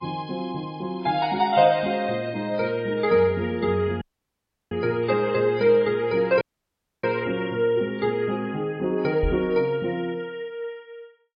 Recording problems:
lossy compression; MP3, log-spectral distance 3 dB
audio cutting out; at 4 s for 0.5 s and at 6.5 s for 0.5 s
microphone thump; at 9 s; peak 0 dB vs average level

